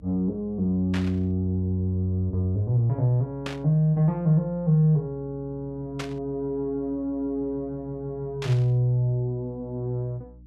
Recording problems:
hum; 60 Hz, harmonics up to 300 Hz, SNR 23 dB
burst of static; 4 times, first at 1 s; peak -5 dB vs average level

